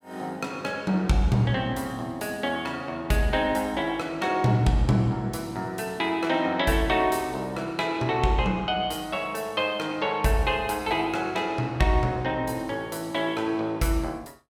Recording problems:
none

